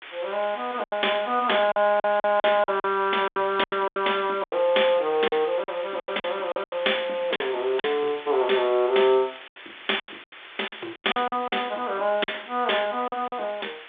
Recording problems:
phone line; 280 Hz to 3.6 kHz, G.726
background hiss; SNR 16 dB
packet loss; 12% of the sound replaced, filled with silence
crackling; from 8 to 11 s; loose cable, SNR 27 dB

